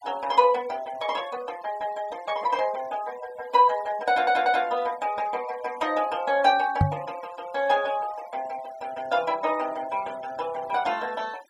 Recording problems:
noise reduction artefacts; signal-to-artefact ratio 21 dB
stutter; at 4 s
knock on the microphone; at 7 s; peak +8 dB vs average level

